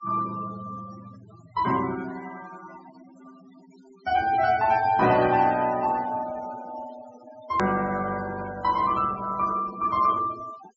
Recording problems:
treble cut off; nothing above 7.5 kHz
noise reduction artefacts; signal-to-artefact ratio 17 dB
edit click; at 7.5 s

